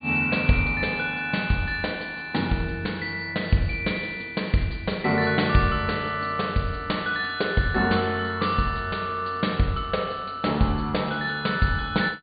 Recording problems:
treble missing; nothing above 4.7 kHz

